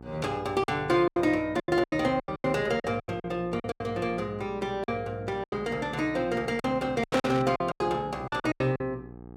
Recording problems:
hum; 60 Hz, harmonics up to 1.3 kHz, SNR 17 dB
lost packets; 15% of the sound replaced, filled with silence
burst of static; at 7 s; peak 0 dB vs average level

